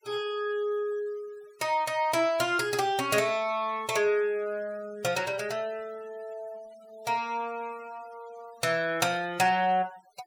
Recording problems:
noise reduction artefacts; signal-to-artefact ratio 23 dB

